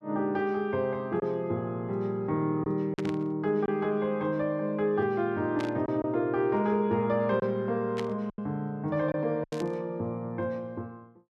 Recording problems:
lost packets; 3% of the sound replaced, filled with silence
static burst; 4 times, first at 3 s; peak -5 dB vs average level

